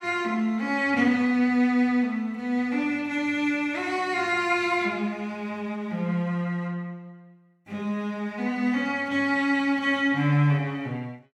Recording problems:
none

